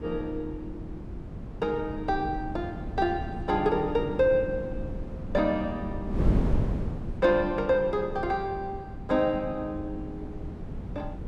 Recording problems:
wind noise; below 210 Hz, SNR 7 dB

